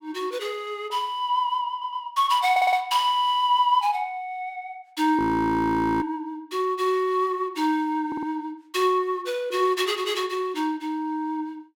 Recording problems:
stutter; at 1.5 s, at 2.5 s and at 8 s
audio freezing; at 5 s for 1 s

